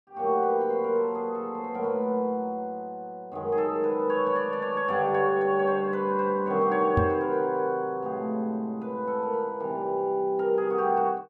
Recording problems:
knock on the microphone; at 7 s; peak +5 dB vs average level

